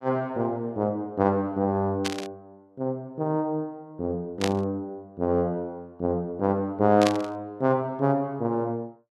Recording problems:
burst of static; at 2 s, at 4.5 s and at 7 s; peak +3 dB vs average level

